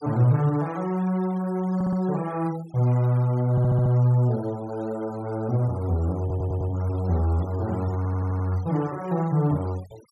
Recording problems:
denoising artefacts; signal-to-artefact ratio 24 dB
stutter; 4 times, first at 2 s

